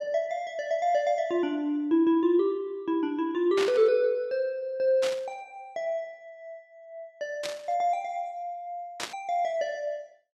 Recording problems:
static burst; 4 times, first at 3.5 s; peak -1 dB vs average level

